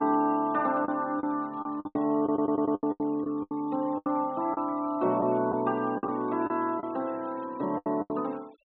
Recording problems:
treble missing; nothing above 4 kHz
denoising artefacts; signal-to-artefact ratio 27 dB
packet loss; 11% of the sound replaced, filled with the last packet
stutter; at 2 s

